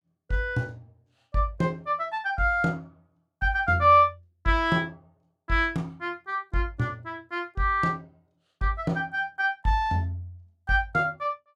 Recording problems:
none

